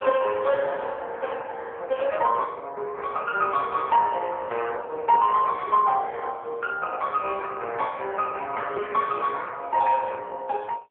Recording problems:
telephone audio; 370 Hz to 3.4 kHz, AMR-NB

